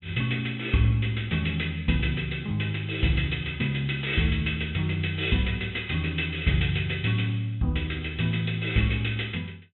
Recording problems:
treble cut off; nothing above 3.9 kHz

